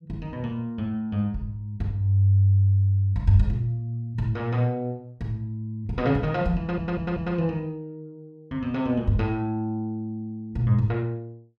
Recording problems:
stutter; at 6.5 s

